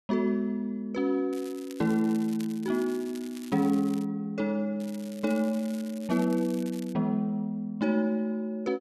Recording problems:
crackle; from 1.5 to 4 s and from 5 to 7 s; loose cable, SNR 20 dB

